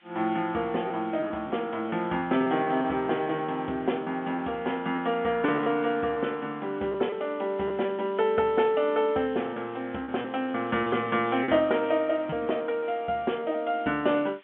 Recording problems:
phone line; 170 Hz to 3.4 kHz, G.711
background hiss; SNR 27 dB
packet loss; 5% of the sound replaced, filled with repeated pitch periods

